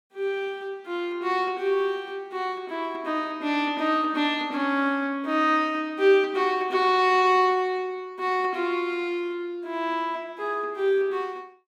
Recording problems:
none

